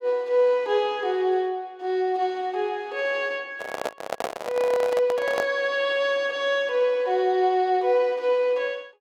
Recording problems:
microphone handling noise; from 3.5 to 5.5 s; peak 0 dB vs average level

